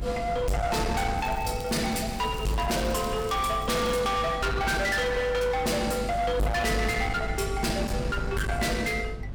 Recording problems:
distortion; hard clipping, uneven, signal-to-distortion ratio 6 dB
hum; 50 Hz, harmonics up to 350 Hz, SNR 13 dB
wind on the microphone; below 320 Hz, SNR 10 dB
crackling; from 1 to 4 s; loose cable, SNR 22 dB

